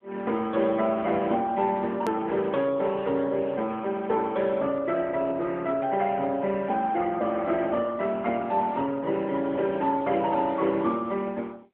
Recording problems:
phone line; 190 Hz to 3.3 kHz, AMR-NB
click at an edit; at 2 s

